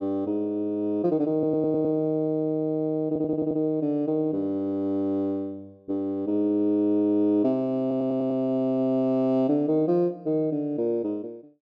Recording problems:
stutter; at 1.5 s, at 3 s and at 8 s

